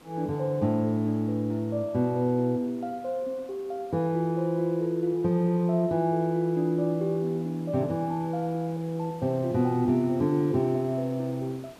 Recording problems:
hiss; slope -6 dB per octave, SNR 24 dB

